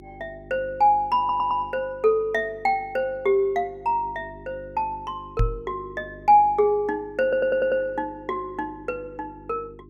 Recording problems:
hum; 50 Hz, harmonics up to 400 Hz, SNR 22 dB
stutter; at 1 s and at 7 s
microphone bump; at 5.5 s; peak +4 dB vs average level

